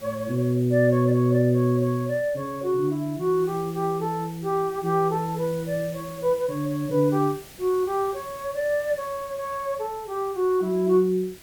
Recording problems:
hiss; SNR 21 dB

